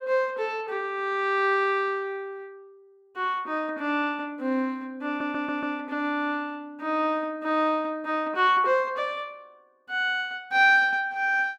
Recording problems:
stutter; at 5 s

